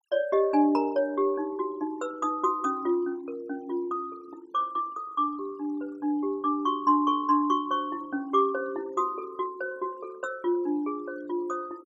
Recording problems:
noise reduction artefacts; signal-to-artefact ratio 26 dB

